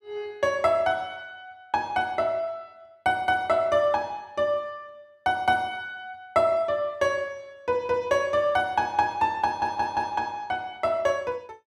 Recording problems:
stutter; at 9.5 s

